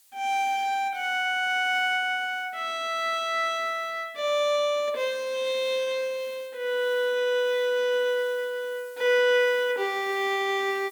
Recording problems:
hiss; slope +3 dB per octave, SNR 27 dB

